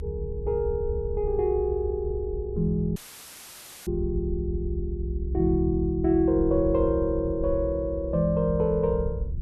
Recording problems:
hum; 50 Hz, harmonics up to 350 Hz, SNR 23 dB
rumble; below 76 Hz, strongest tone 64 Hz, SNR 7 dB
dropout; at 3 s for 1 s; filled with static

